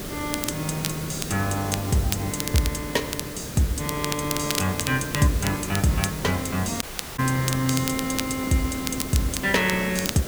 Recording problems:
hiss; SNR 7 dB
crackle; vinyl, SNR 7 dB
audio cutting out; at 7 s

